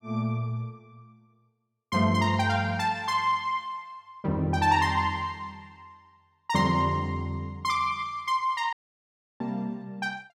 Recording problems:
audio cutting out; at 8.5 s for 0.5 s

